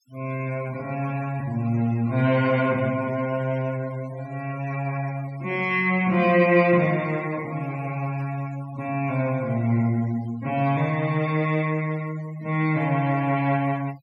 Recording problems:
noise reduction artefacts; signal-to-artefact ratio 22 dB

